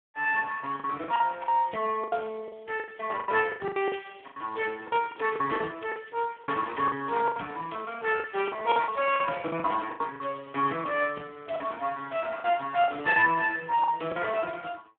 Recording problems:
telephone audio; 190 Hz to 3.4 kHz, Speex
lost packets; 12% of the sound replaced, filled with the last packet

